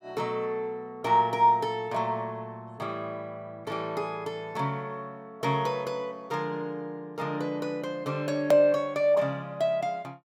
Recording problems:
click at an edit; at 8.5 s

